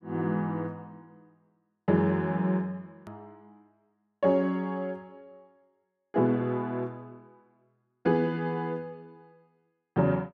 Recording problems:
edit click; at 3 s

